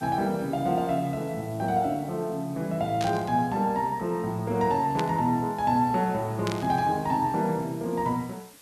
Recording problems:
background hiss; slope -1 dB per octave, SNR 24 dB
static burst; at 3 s, at 5 s and at 6.5 s; peak -3 dB vs average level

